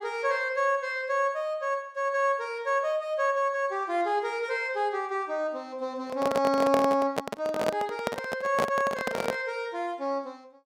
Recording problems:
microphone handling noise; from 6 to 9.5 s; peak +4 dB vs average level

